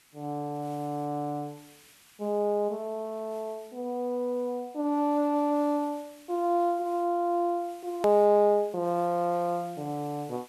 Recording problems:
hiss; slope +1 dB per octave, SNR 27 dB
edit click; at 8 s

